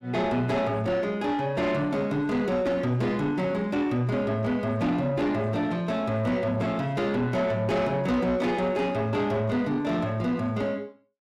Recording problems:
distorted audio; soft clipping, signal-to-distortion ratio 11 dB

